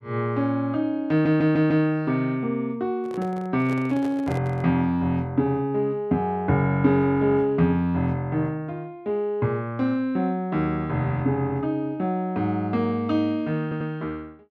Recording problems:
audio stuttering; at 1 s and at 14 s
handling noise; from 3 to 4.5 s; peak -7 dB vs average level

